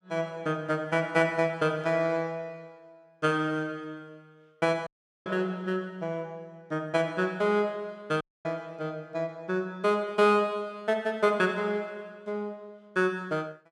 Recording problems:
dropout; at 5 s and at 8 s

